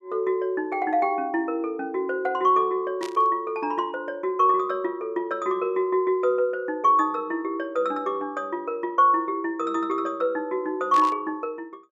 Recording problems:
static burst; at 3 s and at 11 s; peak -7 dB vs average level

